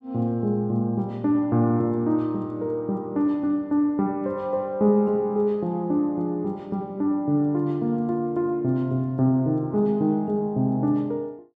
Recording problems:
none

